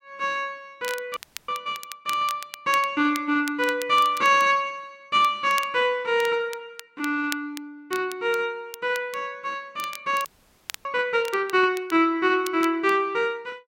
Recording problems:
crackling; vinyl, SNR 17 dB
frozen audio; at 1 s and at 10 s for 0.5 s

